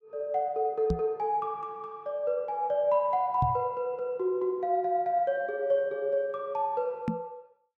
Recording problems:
microphone bump; at 1 s, at 3.5 s and at 7 s; peak +3 dB vs average level

